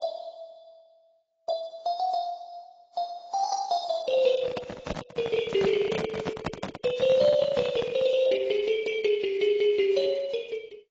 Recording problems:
codec artefacts; Opus, then AAC, log-spectral distance 3 dB
handling noise; from 4.5 to 8 s; peak +2 dB vs average level

